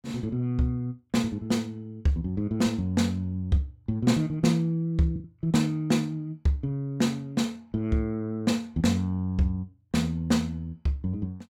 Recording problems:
packet loss; 0.8% of the sound replaced, filled with the last packet

